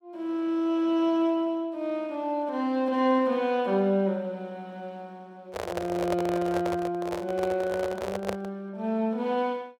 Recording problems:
microphone handling noise; from 5.5 to 8.5 s; peak +1 dB vs average level

